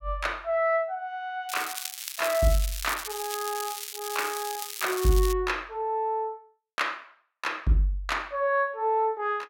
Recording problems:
crackling; from 1.5 to 5.5 s; loose cable, SNR 7 dB

